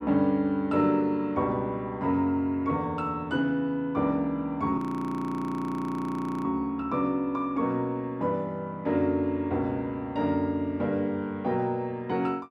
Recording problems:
audio freezing; at 5 s for 1.5 s

